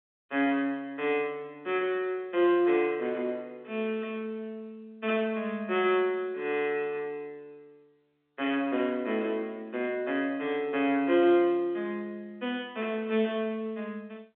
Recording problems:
phone line; 260 Hz to 3.7 kHz, G.711

